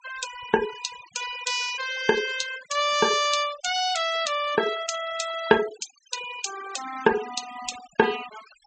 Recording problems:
treble cut off; nothing above 8 kHz
denoising artefacts; signal-to-artefact ratio 12 dB

